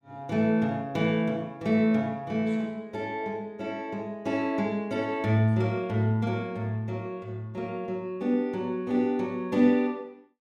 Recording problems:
none

